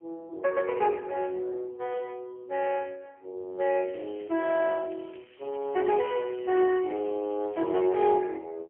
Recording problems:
telephone audio; 300 Hz to 3.2 kHz, AMR-NB, then MP3
crackle; from 4 to 6 s and from 6 to 8 s; loose cable, SNR 27 dB

